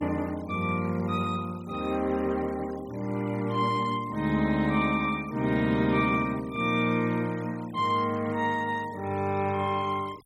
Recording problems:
denoising artefacts; signal-to-artefact ratio 22 dB

